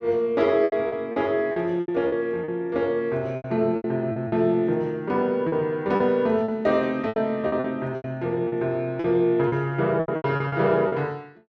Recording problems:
lost packets; 12% of the sound replaced, filled with repeated pitch periods

